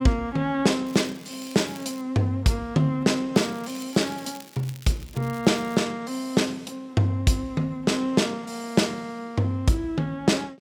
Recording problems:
crackle; from 1 to 2 s and from 3.5 to 6 s; loose cable, SNR 21 dB

